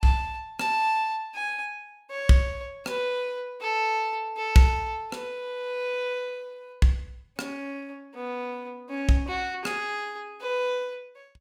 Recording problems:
none

